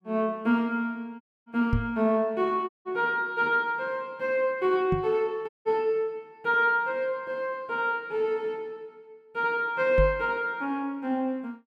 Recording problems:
dropout; at 1 s, at 2.5 s and at 5.5 s
microphone bump; at 1.5 s, at 5 s and at 10 s; peak +4 dB vs average level

